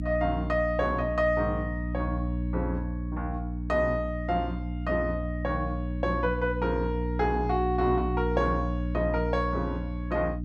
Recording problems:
electrical hum; 60 Hz, harmonics up to 300 Hz, SNR 3 dB

